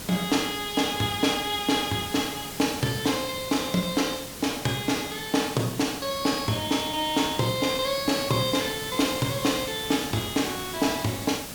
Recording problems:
background hiss; slope -2 dB per octave, SNR 9 dB

